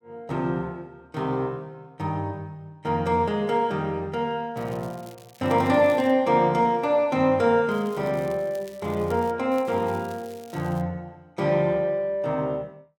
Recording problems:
crackling; from 4.5 to 6 s, from 7.5 to 9.5 s and from 9.5 to 11 s; loose cable, SNR 26 dB

